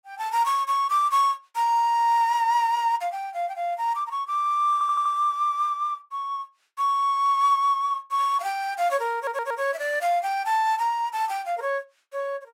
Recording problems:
stutter; at 4.5 s and at 9 s

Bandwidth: 16 kHz